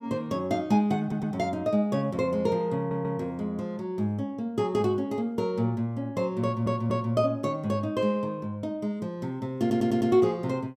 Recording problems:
stutter; 4 times, first at 1 s

